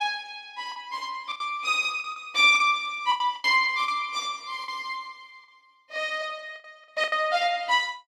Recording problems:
packet loss; 9% of the sound replaced, filled with the last packet

